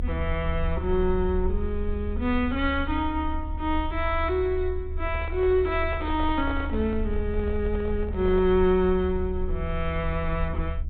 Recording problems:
treble cut off; nothing above 4 kHz
low-frequency rumble; below 74 Hz, strongest tone 24 Hz, SNR 6 dB
microphone handling noise; from 5 to 8.5 s; peak -7 dB vs average level

